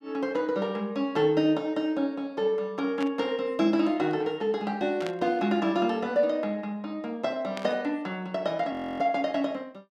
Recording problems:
static burst; at 3 s, at 5 s and at 7.5 s; peak -6 dB vs average level
frozen audio; at 8.5 s

